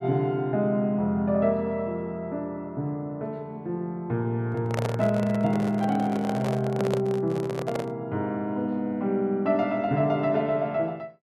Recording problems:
microphone handling noise; from 4.5 to 8 s; peak +2 dB vs average level

